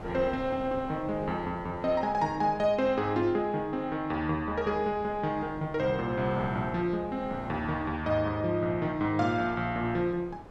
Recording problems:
wind on the microphone; below 710 Hz, SNR 17 dB

